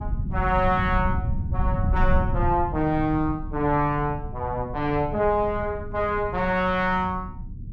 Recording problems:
low-frequency rumble; below 120 Hz, SNR 6 dB

